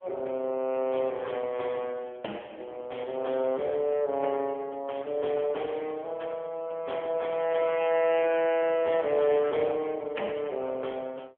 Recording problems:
phone line; 280 Hz to 3.3 kHz, AMR-NB

